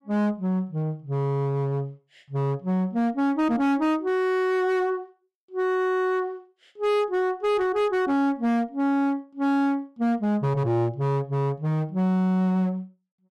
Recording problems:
distortion; hard clipping, signal-to-distortion ratio 11 dB

